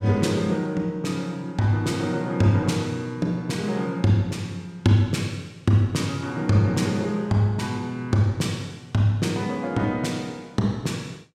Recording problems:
none

